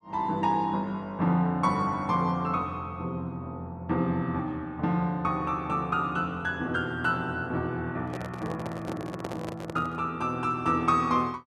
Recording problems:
handling noise; from 8 to 10 s; peak -2 dB vs average level

